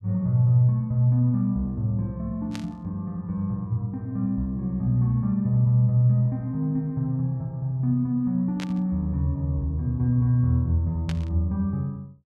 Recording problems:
burst of static; at 2.5 s, at 8.5 s and at 11 s; peak -8 dB vs average level

